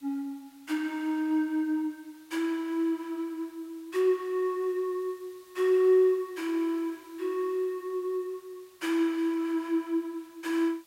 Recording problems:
hiss; slope 0 dB per octave, SNR 29 dB

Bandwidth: 16 kHz